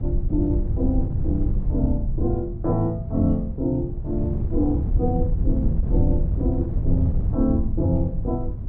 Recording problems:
rumble; below 82 Hz, SNR 4 dB
wind on the microphone; below 120 Hz, SNR 3 dB

